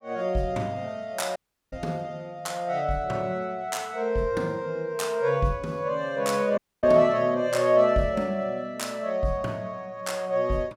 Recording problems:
dropout; at 1.5 s and at 6.5 s

